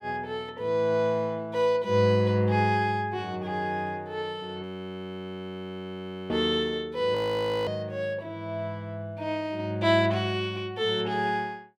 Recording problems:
frozen audio; at 4.5 s for 1.5 s and at 7 s for 0.5 s

